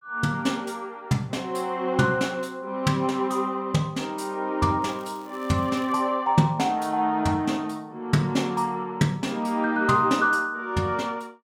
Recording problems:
crackle; from 5 to 6 s; loose cable, SNR 27 dB

